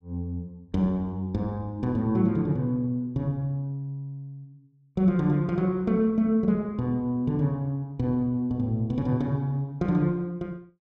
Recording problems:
none

